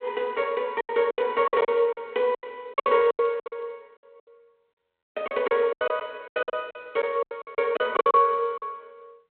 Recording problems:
phone line; 280 Hz to 3.6 kHz, G.726
lost packets; 18% of the sound replaced, filled with silence

